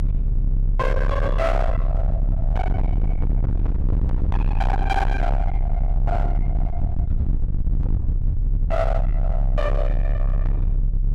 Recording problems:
distorted audio; hard clipping, signal-to-distortion ratio 6 dB
low-frequency rumble; below 80 Hz, strongest tone 34 Hz, SNR -4 dB

